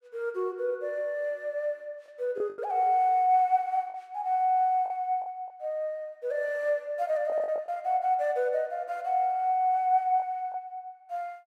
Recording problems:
packet loss; 4% of the sound replaced, filled with the last packet

